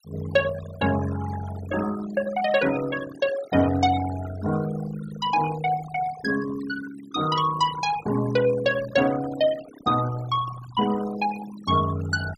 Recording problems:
denoising artefacts; signal-to-artefact ratio 12 dB

